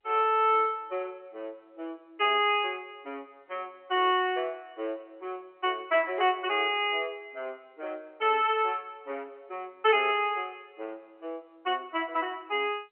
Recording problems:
phone line; 260 Hz to 3.3 kHz, G.711

